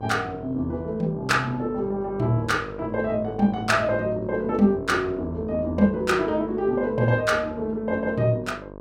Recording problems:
hum; 50 Hz, harmonics up to 1.3 kHz, SNR 15 dB

